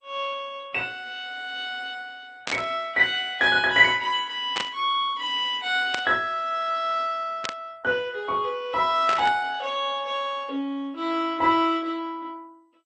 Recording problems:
lossy codec; Opus, then MP2, log-spectral distance 3 dB, nothing above 6.9 kHz
burst of static; 5 times, first at 2.5 s; peak 0 dB vs average level

